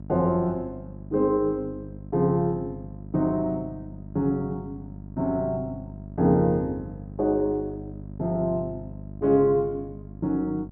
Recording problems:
hum; 50 Hz, harmonics up to 650 Hz, SNR 14 dB

